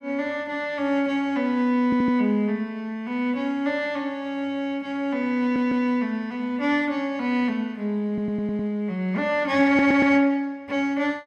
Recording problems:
stutter; 4 times, first at 2 s

